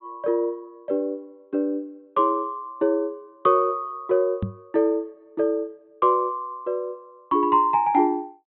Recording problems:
treble missing; nothing above 4 kHz
microphone thump; at 4.5 s; peak 0 dB vs average level

